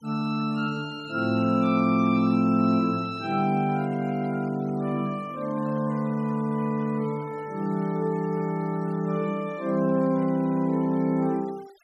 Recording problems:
denoising artefacts; signal-to-artefact ratio 26 dB

